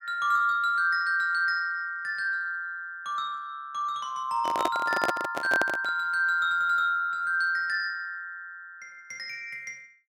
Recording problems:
handling noise; from 4.5 to 6 s; peak +3 dB vs average level

